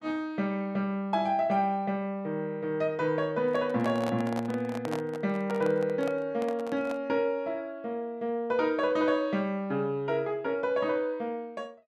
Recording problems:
microphone handling noise; from 3.5 to 7 s; peak -3 dB vs average level

